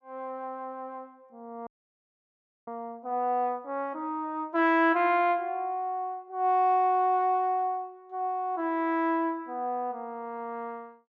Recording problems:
frozen audio; at 1.5 s for 1 s

